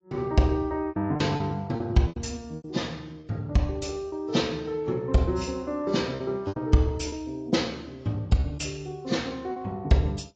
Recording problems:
lossy compression; AAC, log-spectral distance 3 dB, nothing above 7.3 kHz
lost packets; 7% of the sound replaced, filled with repeated pitch periods

